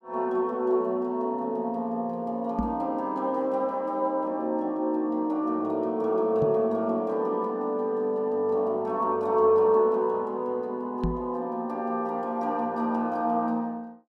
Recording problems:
knock on the microphone; at 2.5 s, at 6.5 s and at 11 s; peak +2 dB vs average level

